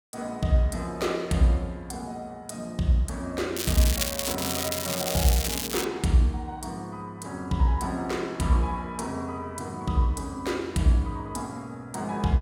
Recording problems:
crackling; from 3.5 to 6 s; loose cable, SNR 1 dB

